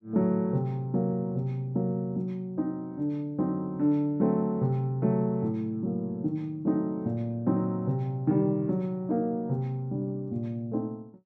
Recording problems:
none

